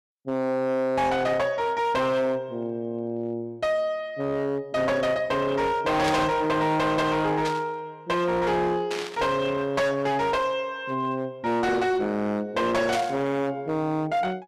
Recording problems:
distorted audio; hard clipping, signal-to-distortion ratio 8 dB
burst of static; 4 times, first at 6 s; peak -2 dB vs average level

